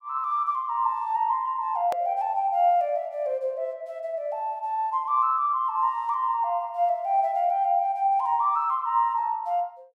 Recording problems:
click at an edit; at 2 s

